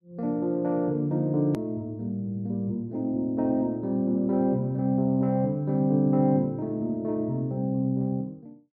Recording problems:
hard cut with a click; at 1.5 s

